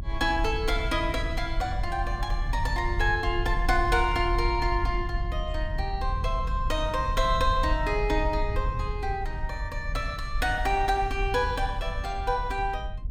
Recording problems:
rumble; below 68 Hz, SNR 4 dB

